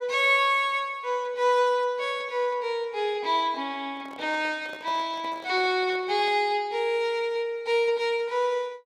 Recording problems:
microphone handling noise; from 4 to 6.5 s; peak -12 dB vs average level

